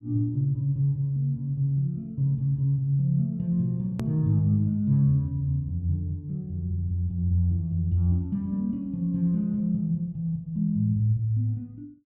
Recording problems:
click at an edit; at 4 s

